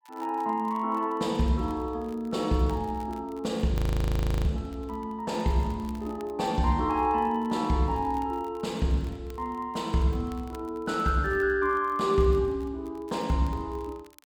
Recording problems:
crackling; vinyl, SNR 29 dB
frozen audio; at 3.5 s for 0.5 s

